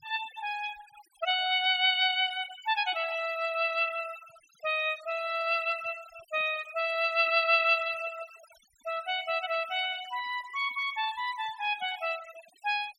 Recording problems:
noise reduction artefacts; signal-to-artefact ratio 18 dB

